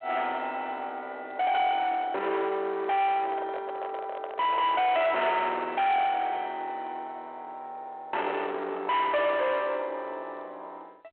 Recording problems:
telephone audio; 340 Hz to 3.6 kHz, G.726
distortion; soft clipping, signal-to-distortion ratio 6 dB
microphone handling noise; from 3 to 5.5 s; peak -6 dB vs average level

